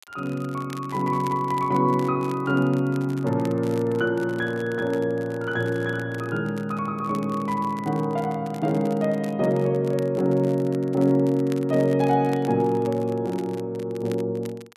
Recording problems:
crackling; vinyl, SNR 23 dB

